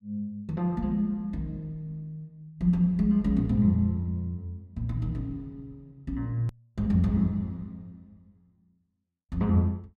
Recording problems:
click at an edit; at 6.5 s

